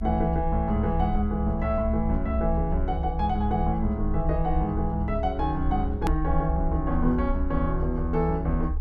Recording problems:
rumble; below 68 Hz, SNR 3 dB
edit click; at 6 s

